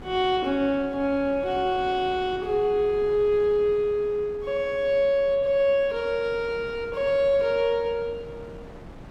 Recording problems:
wind on the microphone; below 530 Hz, SNR 20 dB

